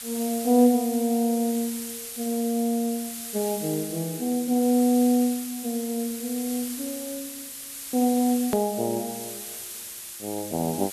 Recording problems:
hiss; slope +3 dB per octave, SNR 9 dB
click at an edit; at 8.5 s

